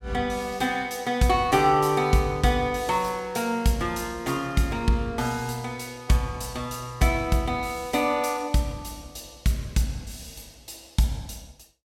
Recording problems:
none

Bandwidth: 16.5 kHz